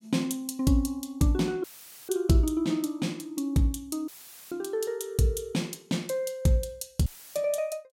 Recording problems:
dropout; at 1.5 s, at 4 s and at 7 s; filled with static

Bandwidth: 16.5 kHz